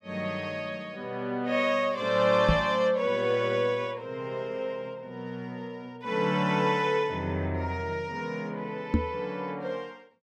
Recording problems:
microphone thump; at 2.5 s and at 9 s; peak +8 dB vs average level

